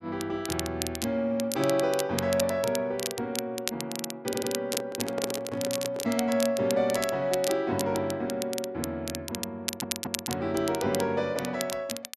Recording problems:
crackling; vinyl, SNR 6 dB
audio stuttering; at 4.5 s and at 9.5 s
handling noise; from 4.5 to 6 s; peak 0 dB vs average level

